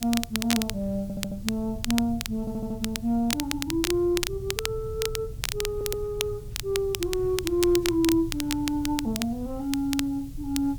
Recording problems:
hiss; SNR 26 dB
low-frequency rumble; below 120 Hz, SNR 12 dB
crackling; vinyl, SNR 5 dB
stutter; at 1 s, at 2.5 s and at 5.5 s

